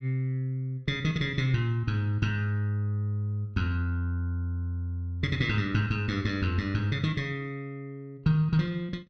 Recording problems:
none

